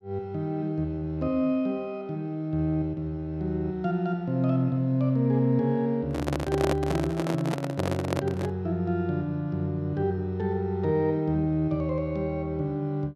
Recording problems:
microphone handling noise; from 6 to 8.5 s; peak +4 dB vs average level

